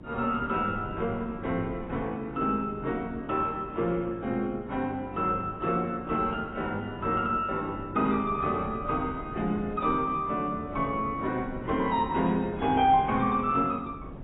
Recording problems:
lossy codec; AAC, log-spectral distance 2 dB, nothing above 3.2 kHz
hum; 50 Hz, harmonics up to 350 Hz, SNR 21 dB
wind noise; below 300 Hz, SNR 16 dB

